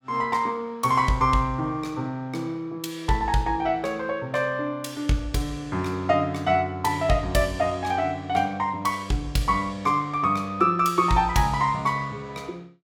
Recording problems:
none

